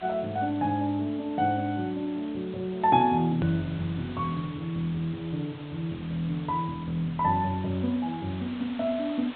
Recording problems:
treble cut off; nothing above 4 kHz
background hiss; SNR 18 dB
hard cut with a click; at 3.5 s

